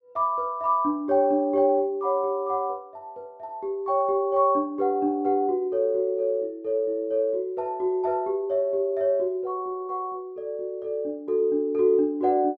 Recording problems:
none

